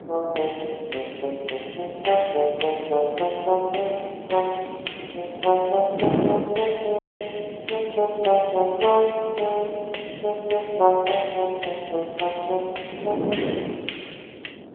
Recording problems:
telephone audio; 280 Hz to 3.3 kHz, AMR-NB
wind on the microphone; below 520 Hz, SNR 9 dB
audio cutting out; at 7 s

